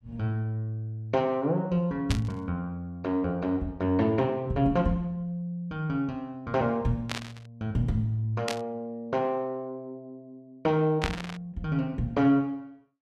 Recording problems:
static burst; 4 times, first at 2 s; peak +3 dB vs average level

